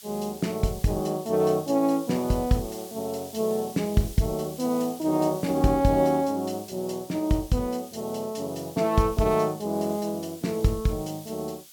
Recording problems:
hiss; slope +4 dB per octave, SNR 18 dB

